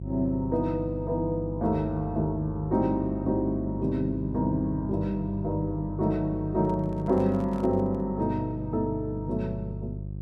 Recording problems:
electrical hum; 50 Hz, harmonics up to 400 Hz, SNR 8 dB
handling noise; from 6.5 to 8 s; peak -9 dB vs average level

